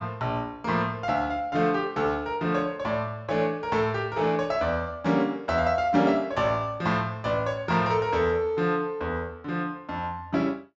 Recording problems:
treble cut off; nothing above 8 kHz

